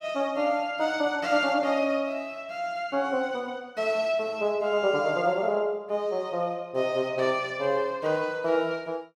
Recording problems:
none

